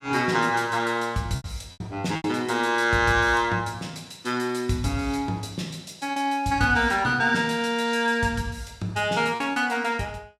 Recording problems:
lost packets; 4% of the sound replaced, filled with repeated pitch periods

